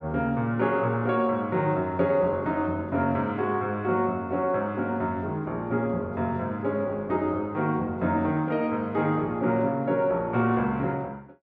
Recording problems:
none

